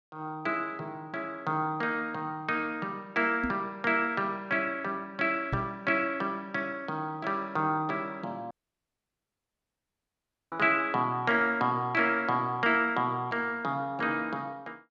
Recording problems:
microphone thump; at 3.5 s and at 5.5 s; peak +1 dB vs average level
dropout; at 8.5 s for 2 s

